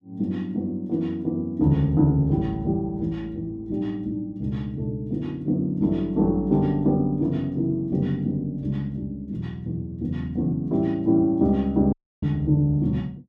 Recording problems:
dropout; at 12 s

